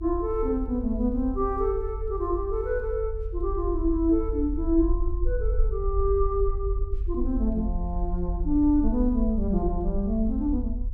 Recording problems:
low-frequency rumble; below 48 Hz, SNR 5 dB

